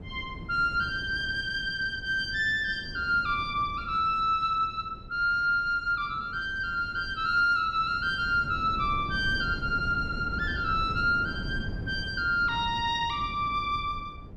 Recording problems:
wind on the microphone; below 220 Hz, SNR 13 dB

